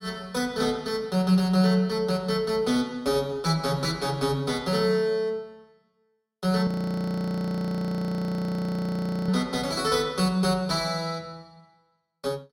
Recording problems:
frozen audio; at 6.5 s for 2.5 s

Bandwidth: 16 kHz